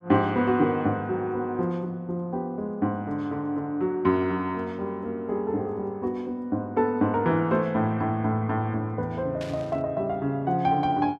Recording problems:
static burst; at 9.5 s; peak -10 dB vs average level

